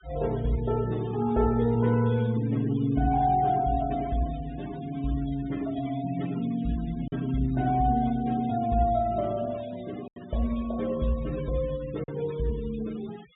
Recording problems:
treble missing; nothing above 4 kHz
denoising artefacts; signal-to-artefact ratio 21 dB
packet loss; 1.2% of the sound replaced, filled with silence

